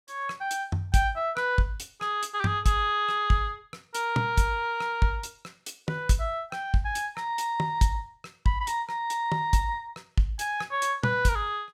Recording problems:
none

